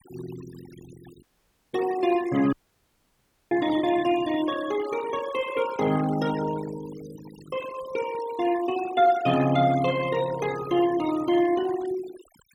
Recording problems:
denoising artefacts; signal-to-artefact ratio 15 dB
dropout; at 1 s for 0.5 s and at 2.5 s for 1 s

